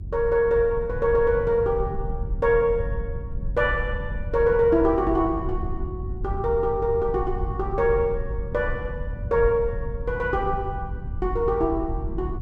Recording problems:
rumble; below 92 Hz, SNR 8 dB

